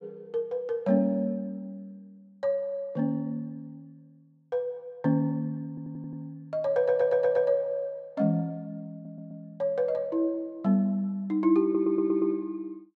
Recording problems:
stutter; 4 times, first at 5.5 s

